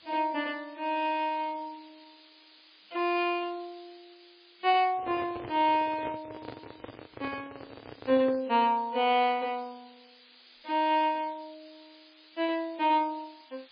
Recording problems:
lossy compression; MP3, log-spectral distance 14 dB, nothing above 4.5 kHz
hiss; SNR 26 dB
handling noise; from 5 to 8.5 s; peak -7 dB vs average level

